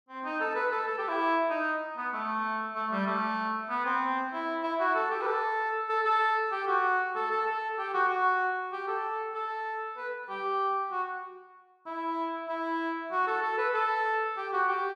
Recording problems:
none

